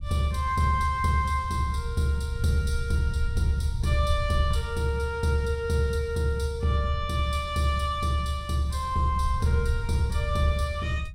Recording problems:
rumble; below 84 Hz, SNR 9 dB

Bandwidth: 16 kHz